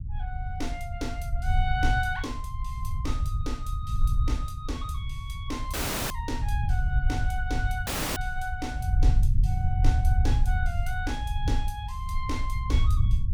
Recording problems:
rumble; below 86 Hz, SNR -6 dB
dropout; at 5.5 s and at 8 s

